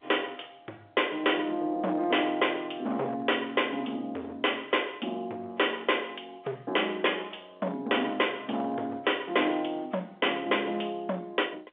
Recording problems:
telephone audio; 260 Hz to 3.6 kHz, G.711
distorted audio; hard clipping, signal-to-distortion ratio 9 dB

